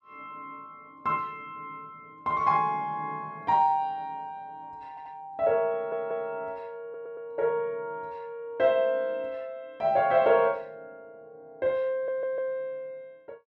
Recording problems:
stutter; 4 times, first at 5 s

